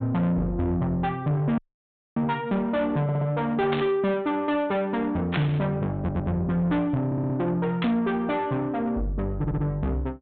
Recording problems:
treble cut off; nothing above 4 kHz
distorted audio; soft clipping, signal-to-distortion ratio 11 dB
dropout; at 1.5 s for 0.5 s
audio stuttering; 4 times, first at 3 s
static burst; at 3.5 s, at 5.5 s and at 8 s; peak +1 dB vs average level

